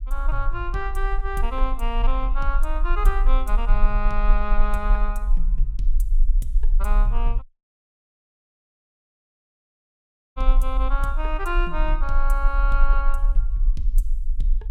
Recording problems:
low-frequency rumble; below 38 Hz, strongest tone 26 Hz, SNR -5 dB
audio cutting out; at 7.5 s for 3 s

